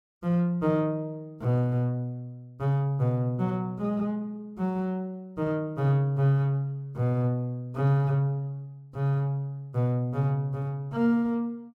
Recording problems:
none

